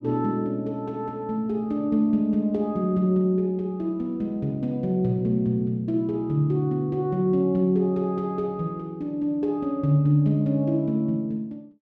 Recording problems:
none

